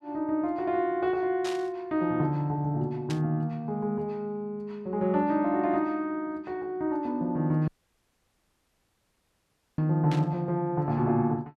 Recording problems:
burst of static; at 1.5 s, at 3 s and at 10 s; peak -6 dB vs average level
audio cutting out; at 7.5 s for 2 s

